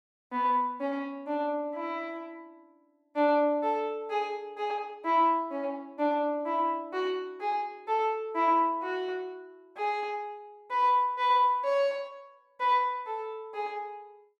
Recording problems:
none

